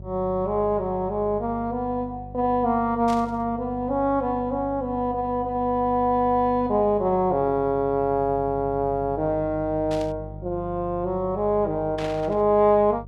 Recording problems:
hum; 50 Hz, harmonics up to 600 Hz, SNR 16 dB
static burst; at 3 s, at 10 s and at 12 s; peak -9 dB vs average level

